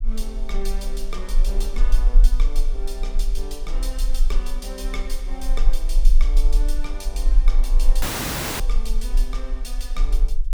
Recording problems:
low-frequency rumble; below 36 Hz, strongest tone 18 Hz, SNR -11 dB
dropout; at 8 s for 0.5 s

